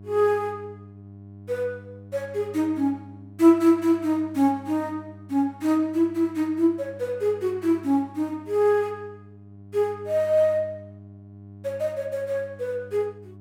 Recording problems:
hum; 50 Hz, harmonics up to 700 Hz, SNR 21 dB

